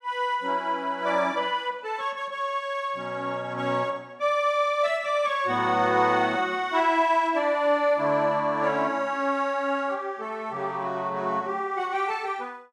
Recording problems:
none

